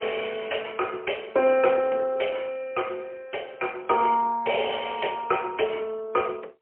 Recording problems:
telephone audio; 300 Hz to 3.2 kHz, AMR-NB, then MP3

